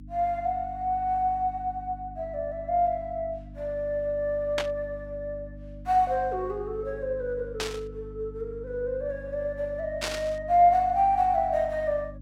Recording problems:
electrical hum; 50 Hz, harmonics up to 300 Hz, SNR 16 dB
static burst; at 4.5 s, at 7.5 s and at 10 s; peak +1 dB vs average level

